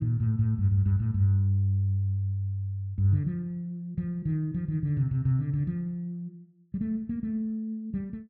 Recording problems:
treble missing; nothing above 7.4 kHz

